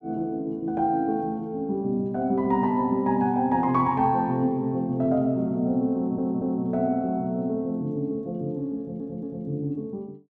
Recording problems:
stutter; at 6 s and at 9 s

